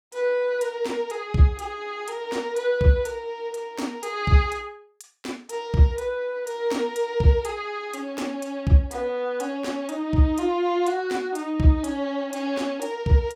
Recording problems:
none

